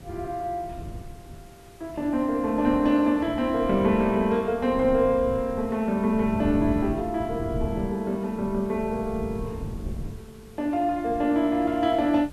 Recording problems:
hiss; slope -3 dB per octave, SNR 28 dB
wind noise; below 180 Hz, SNR 13 dB

